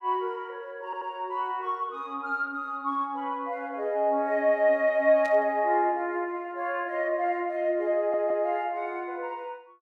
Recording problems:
audio stuttering; at 1 s and at 8 s
burst of static; at 5.5 s; peak -13 dB vs average level

